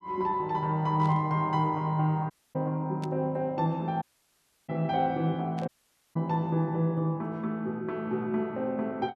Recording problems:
static burst; at 1 s, at 3 s and at 5.5 s; peak -12 dB vs average level
audio cutting out; at 2.5 s, at 4 s for 0.5 s and at 5.5 s

